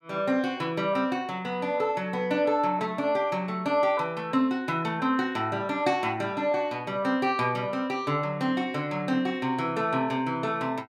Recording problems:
none

